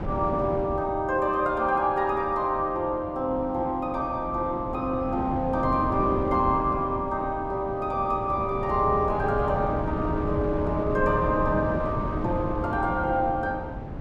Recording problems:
wind on the microphone; below 380 Hz, SNR 7 dB

